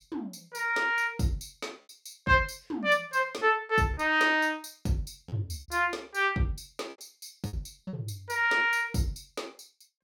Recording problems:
lost packets; 5% of the sound replaced, filled with repeated pitch periods

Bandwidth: 17 kHz